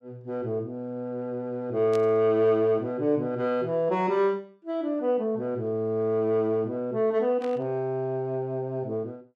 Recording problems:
static burst; at 2 s and at 7.5 s; peak -11 dB vs average level

